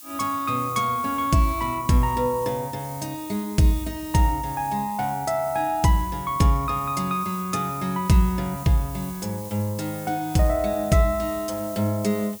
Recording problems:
background hiss; SNR 15 dB

